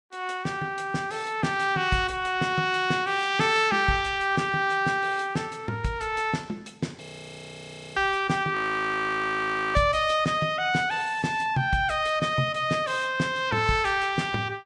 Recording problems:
lossy codec; Vorbis, log-spectral distance 3 dB
frozen audio; at 7 s for 1 s and at 8.5 s for 1 s

